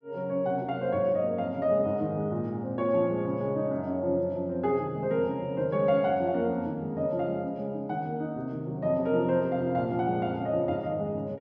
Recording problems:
none

